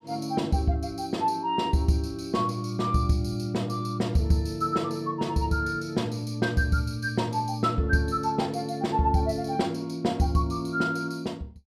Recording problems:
none

